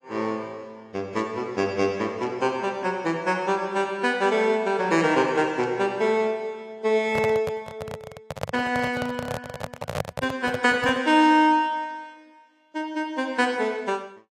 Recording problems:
lossy compression; AAC, log-spectral distance 2 dB
microphone handling noise; from 7 to 11 s; peak 0 dB vs average level

